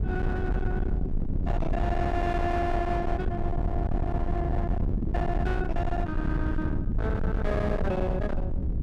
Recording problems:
distortion; hard clipping, uneven, signal-to-distortion ratio 7 dB
rumble; below 160 Hz, SNR -1 dB

